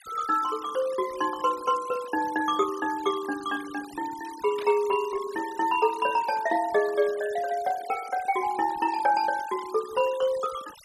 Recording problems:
noise reduction artefacts; signal-to-artefact ratio 18 dB
burst of static; at 4.5 s; peak -11 dB vs average level

